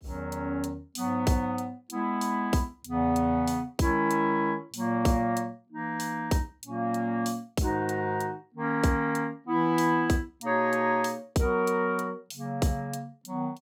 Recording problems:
none

